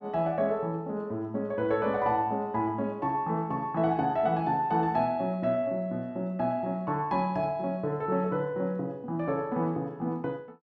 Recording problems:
none

